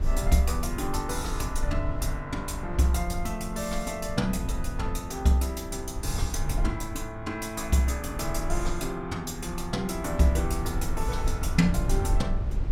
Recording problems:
rumble; below 72 Hz, SNR 5 dB

